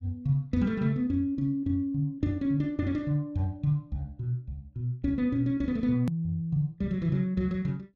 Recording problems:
edit click; at 6 s

